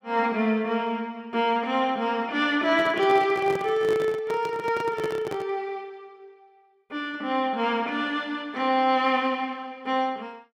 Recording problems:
handling noise; from 2.5 to 5.5 s; peak -4 dB vs average level

